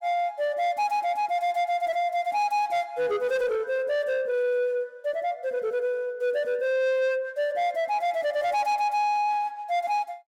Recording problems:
distorted audio; soft clipping, signal-to-distortion ratio 11 dB

